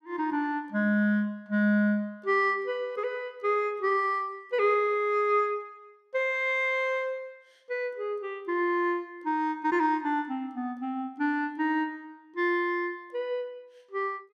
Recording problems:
none

